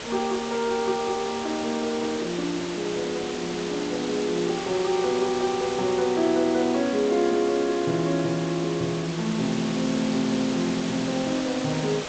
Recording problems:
lossy codec; G.722, log-spectral distance 9 dB
hiss; slope -3 dB per octave, SNR 8 dB

